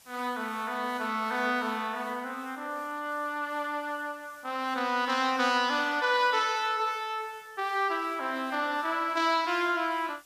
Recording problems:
hiss; SNR 26 dB

